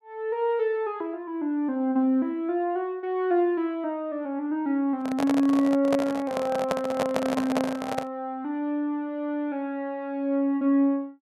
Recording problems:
handling noise; from 5 to 8 s; peak +3 dB vs average level

